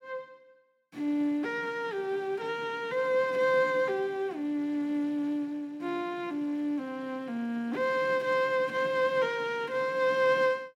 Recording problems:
none

